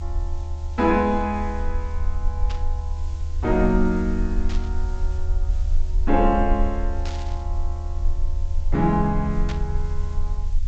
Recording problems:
low-pass filter; nothing above 8 kHz
hiss; slope 0 dB per octave, SNR 28 dB
low-frequency rumble; below 74 Hz, strongest tone 20 Hz, SNR 4 dB
static burst; 4 times, first at 2.5 s; peak -8 dB vs average level

